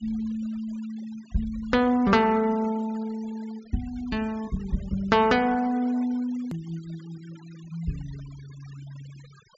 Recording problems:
low-pass filter; nothing above 8 kHz
noise reduction artefacts; signal-to-artefact ratio 24 dB
edit click; at 6.5 s

